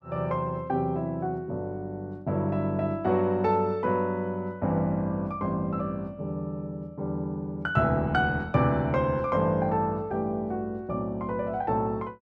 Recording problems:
none

